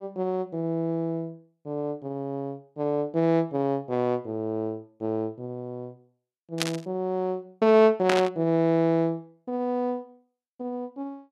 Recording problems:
static burst; at 6.5 s and at 8 s; peak +5 dB vs average level

